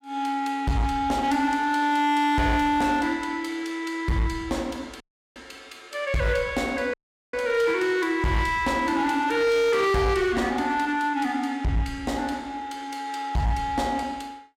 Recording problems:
distortion; hard clipping, uneven, signal-to-distortion ratio 11 dB
dropout; at 5 s and at 7 s

